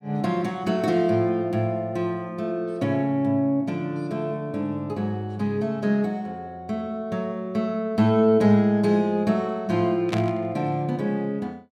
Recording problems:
burst of static; at 10 s; peak -3 dB vs average level

